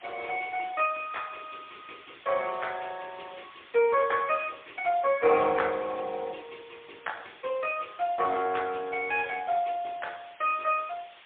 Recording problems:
phone line; 320 Hz to 3.4 kHz, AMR-NB, then MP3
hiss; SNR 22 dB

